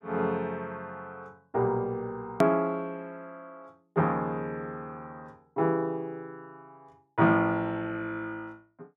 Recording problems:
click at an edit; at 2.5 s

